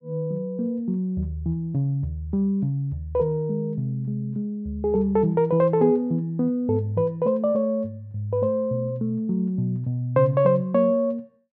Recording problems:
none

